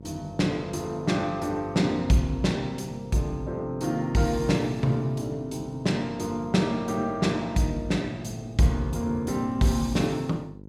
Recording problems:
hum; 50 Hz, harmonics up to 600 Hz, SNR 18 dB

